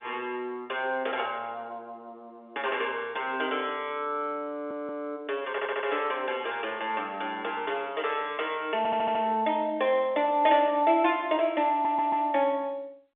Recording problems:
telephone audio; 300 Hz to 3.6 kHz, G.711
stutter; 4 times, first at 4.5 s

